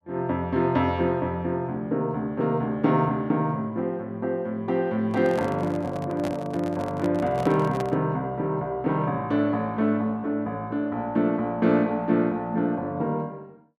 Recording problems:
handling noise; from 5 to 8 s; peak -3 dB vs average level

